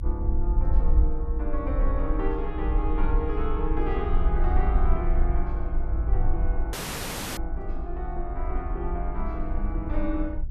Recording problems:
rumble; below 54 Hz, strongest tone 22 Hz, SNR -4 dB
audio cutting out; at 6.5 s for 0.5 s

